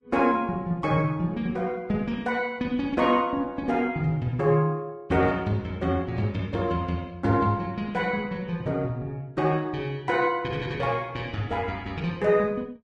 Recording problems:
lossy codec; Vorbis, log-spectral distance 2 dB, nothing above 10.4 kHz

